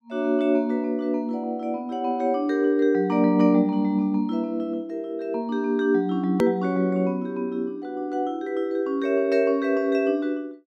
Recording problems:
hard cut with a click; at 6.5 s

